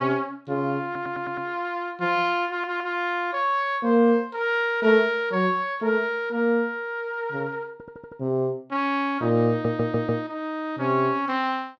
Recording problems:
stutter; 4 times, first at 1 s

